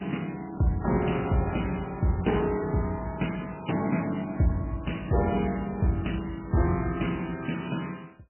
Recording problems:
lossy compression; MP3, log-spectral distance 6 dB, nothing above 3 kHz

